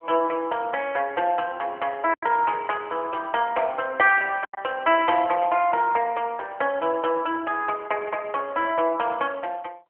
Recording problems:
telephone audio; 240 Hz to 3.3 kHz, AMR-NB
packet loss; 1.8% of the sound replaced, filled with silence

